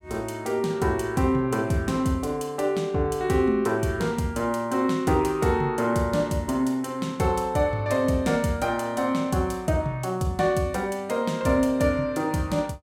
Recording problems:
none

